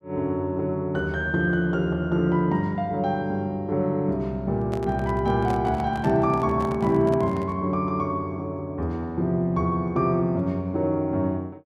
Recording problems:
handling noise; from 4.5 to 7.5 s; peak -7 dB vs average level

